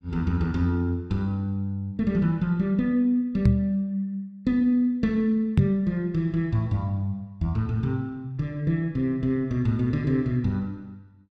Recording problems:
knock on the microphone; at 3.5 s and at 5.5 s; peak +9 dB vs average level

